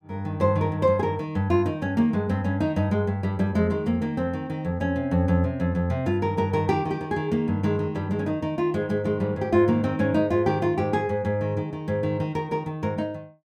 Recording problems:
none

